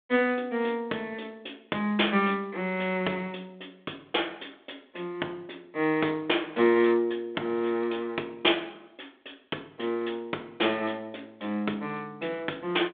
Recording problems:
telephone audio; 260 Hz to 3.6 kHz, G.726

